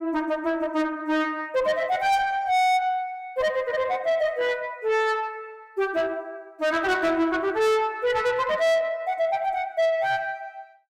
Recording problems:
distorted audio; soft clipping, signal-to-distortion ratio 8 dB

